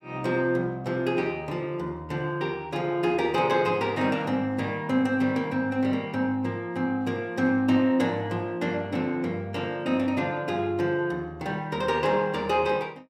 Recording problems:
none

